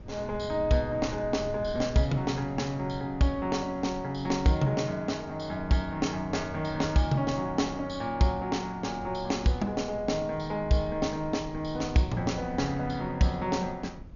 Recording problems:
treble cut off; nothing above 6.9 kHz
wind on the microphone; below 180 Hz, SNR 16 dB

